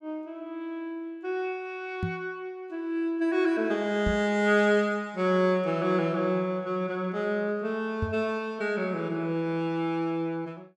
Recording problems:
microphone thump; at 2 s, at 4 s and at 8 s; peak +2 dB vs average level

